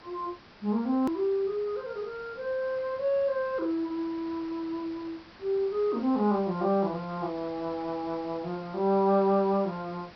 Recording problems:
treble cut off; nothing above 5.5 kHz
background hiss; slope -3 dB per octave, SNR 21 dB
hard cut with a click; at 1 s

